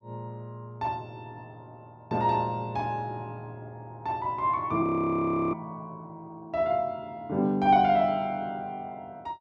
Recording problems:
audio freezing; at 5 s for 0.5 s

